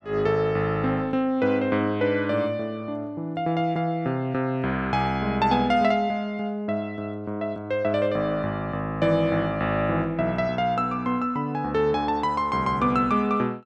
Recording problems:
none

